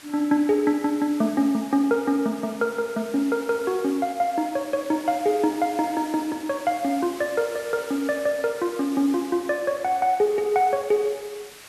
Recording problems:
hiss; slope 0 dB per octave, SNR 18 dB

